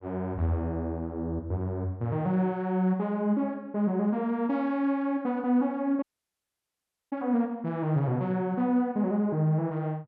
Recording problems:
audio cutting out; at 6 s for 1 s

